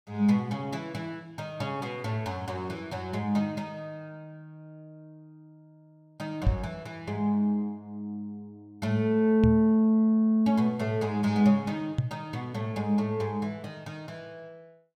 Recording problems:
microphone thump; at 6.5 s, at 9.5 s and at 12 s; peak +6 dB vs average level

